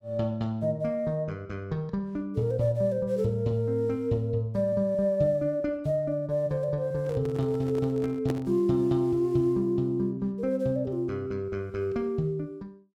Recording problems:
handling noise; from 7 to 8.5 s; peak -2 dB vs average level

